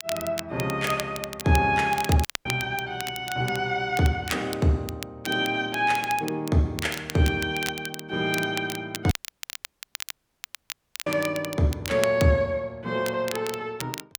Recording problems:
crackling; vinyl, SNR 11 dB
dropout; at 2.5 s and at 9 s for 2 s

